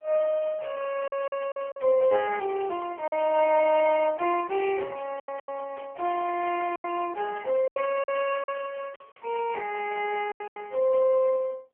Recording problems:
telephone audio; 320 Hz to 3.1 kHz, AMR-NB
lost packets; 7% of the sound replaced, filled with silence

